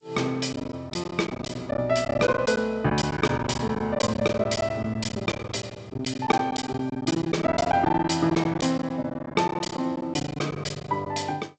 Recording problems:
lossy codec; G.722, log-spectral distance 4 dB, nothing above 7.8 kHz
lost packets; 14% of the sound replaced, filled with silence

